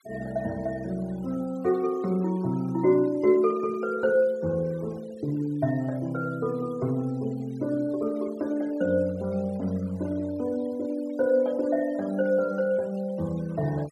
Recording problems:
noise reduction artefacts; signal-to-artefact ratio 25 dB

